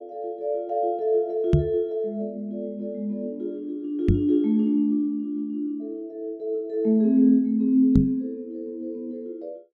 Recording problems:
knock on the microphone; at 1.5 s, at 4 s and at 8 s; peak +9 dB vs average level

